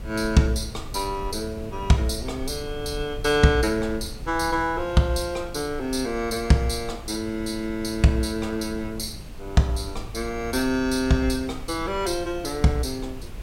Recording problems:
hum; 60 Hz, harmonics up to 1.8 kHz, SNR 27 dB
hiss; SNR 22 dB
rumble; below 84 Hz, SNR 14 dB

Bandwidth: 16 kHz